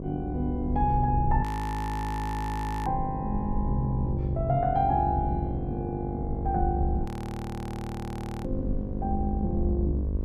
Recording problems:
hum; 50 Hz, harmonics up to 1.1 kHz, SNR 7 dB
low-frequency rumble; below 70 Hz, SNR 4 dB
audio freezing; at 1.5 s for 1.5 s and at 7 s for 1.5 s

